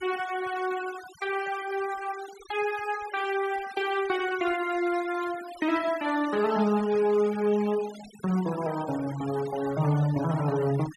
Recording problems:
denoising artefacts; signal-to-artefact ratio 16 dB

